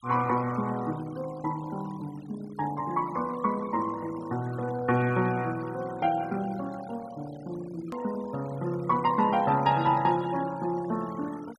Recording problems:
noise reduction artefacts; signal-to-artefact ratio 19 dB
hard cut with a click; at 8 s

